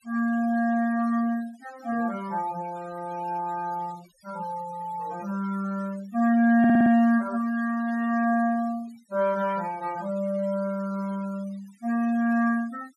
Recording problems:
denoising artefacts; signal-to-artefact ratio 24 dB
audio stuttering; at 6.5 s

